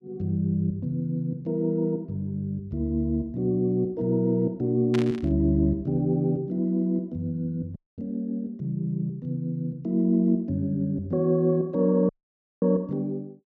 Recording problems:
static burst; at 5 s; peak -4 dB vs average level
dropout; at 8 s and at 12 s for 0.5 s

